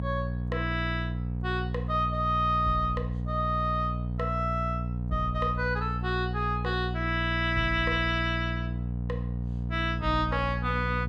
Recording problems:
electrical hum; 60 Hz, harmonics up to 480 Hz, SNR 3 dB

